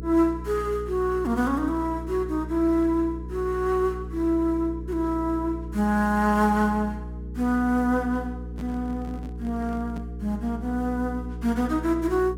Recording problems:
hum; 60 Hz, harmonics up to 480 Hz, SNR 10 dB
handling noise; from 8.5 to 10 s; peak -10 dB vs average level

